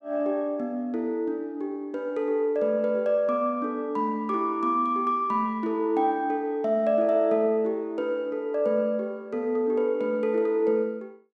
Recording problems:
none

